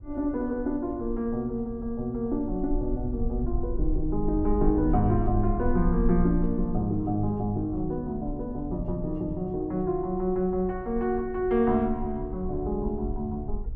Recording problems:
rumble; below 54 Hz, SNR 8 dB

